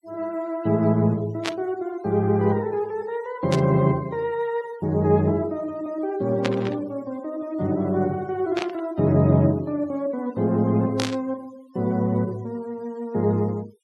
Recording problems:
denoising artefacts; signal-to-artefact ratio 26 dB
burst of static; 5 times, first at 1.5 s; peak 0 dB vs average level

